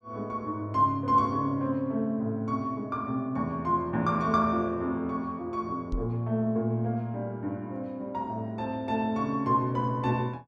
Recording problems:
microphone thump; at 6 s; peak -1 dB vs average level

